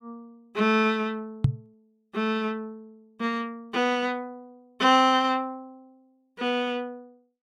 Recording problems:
microphone thump; at 1.5 s; peak +8 dB vs average level

